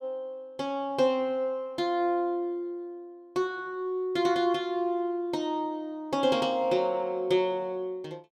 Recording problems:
none

